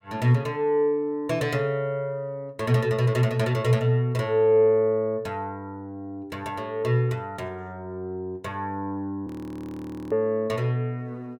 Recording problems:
audio freezing; at 9.5 s for 1 s

